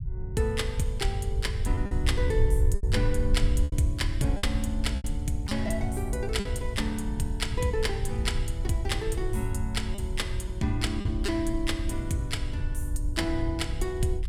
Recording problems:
rumble; below 84 Hz, SNR 0 dB
lost packets; 5% of the sound replaced, filled with repeated pitch periods

